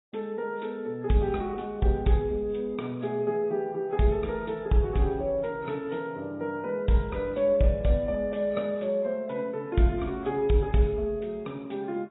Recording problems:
lossy compression; AAC, log-spectral distance 2 dB, nothing above 3.9 kHz

